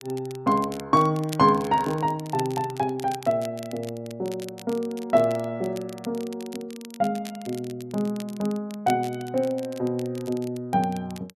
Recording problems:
crackle; vinyl, SNR 19 dB

